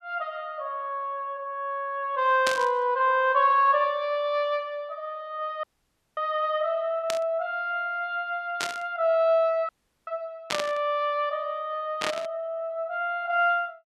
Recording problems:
static burst; 5 times, first at 2.5 s; peak +3 dB vs average level
audio cutting out; at 5.5 s for 0.5 s and at 9.5 s

